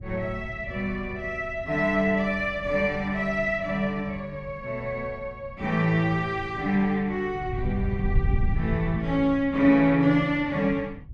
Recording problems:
wind on the microphone; below 110 Hz, SNR 10 dB

